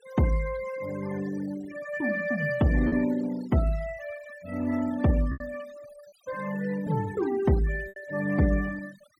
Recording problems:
noise reduction artefacts; signal-to-artefact ratio 17 dB
packet loss; 2% of the sound replaced, filled with repeated pitch periods

